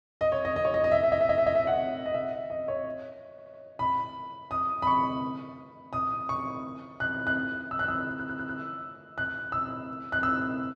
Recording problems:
stutter; at 1 s, at 3.5 s and at 8 s

